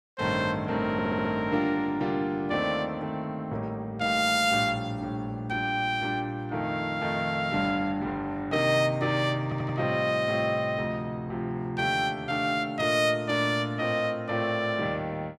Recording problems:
audio stuttering; at 1 s and at 9.5 s

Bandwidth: 14.5 kHz